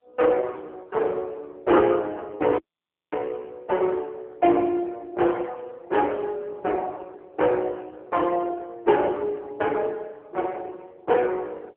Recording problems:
phone line; 300 Hz to 3.2 kHz, AMR-NB
dropout; at 2.5 s for 0.5 s

